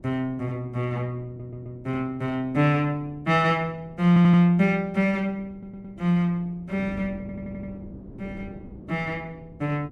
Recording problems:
wind on the microphone; below 320 Hz, SNR 21 dB
audio stuttering; 4 times, first at 1.5 s

